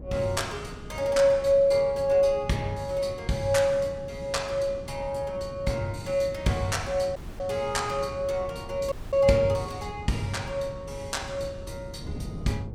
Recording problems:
wind noise; below 210 Hz, SNR 14 dB
dropout; at 7 s and at 9 s

